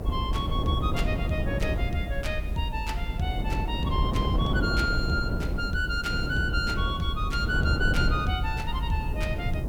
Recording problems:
hiss; slope +3 dB per octave, SNR 27 dB
low-frequency rumble; below 62 Hz, SNR 4 dB
wind noise; below 250 Hz, SNR 1 dB

